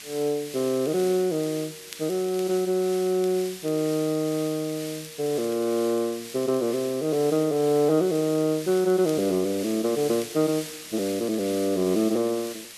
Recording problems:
background hiss; slope +2 dB per octave, SNR 13 dB
crackling; vinyl, SNR 27 dB

